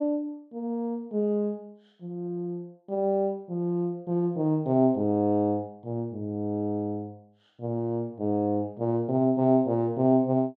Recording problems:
none

